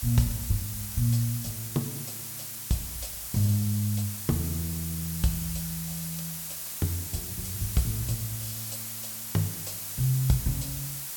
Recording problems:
background hiss; slope +1 dB per octave, SNR 4 dB

